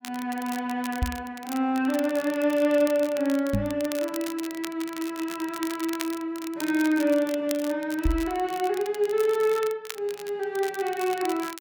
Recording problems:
crackle; vinyl, SNR 14 dB
microphone bump; at 1 s, at 3.5 s and at 8 s; peak +4 dB vs average level

